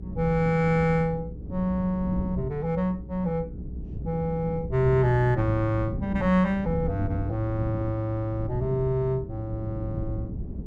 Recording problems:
hum; 60 Hz, harmonics up to 420 Hz, SNR 15 dB
wind on the microphone; below 200 Hz, SNR 10 dB

